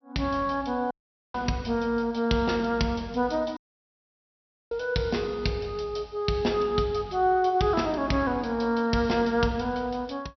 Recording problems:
treble missing; nothing above 5.8 kHz
dropout; at 1 s and at 3.5 s for 1 s

